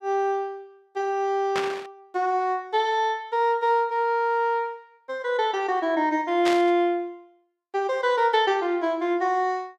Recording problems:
burst of static; at 1.5 s and at 6.5 s; peak -1 dB vs average level

